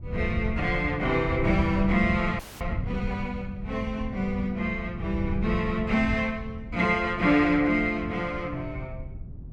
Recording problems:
wind on the microphone; below 130 Hz, SNR 8 dB
audio freezing; at 2.5 s

